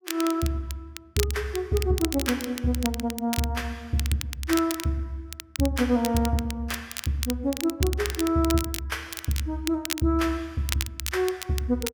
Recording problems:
crackle; vinyl, SNR 8 dB

